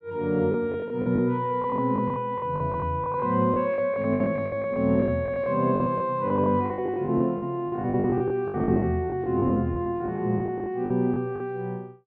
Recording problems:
lost packets; 16% of the sound replaced, filled with the last packet

